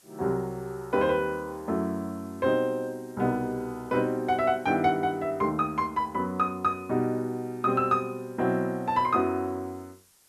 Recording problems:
hiss; slope 0 dB per octave, SNR 29 dB

